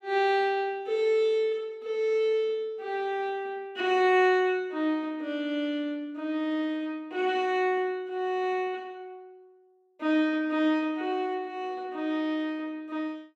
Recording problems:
none

